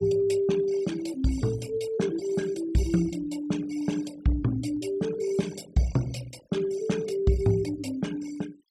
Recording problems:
noise reduction artefacts; signal-to-artefact ratio 20 dB

